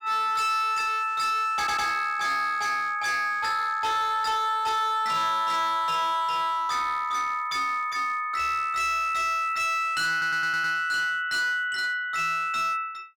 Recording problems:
distorted audio; hard clipping, signal-to-distortion ratio 11 dB
stutter; at 1.5 s and at 10 s

